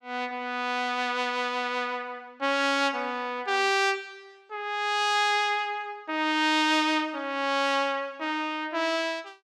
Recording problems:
none

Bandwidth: 15 kHz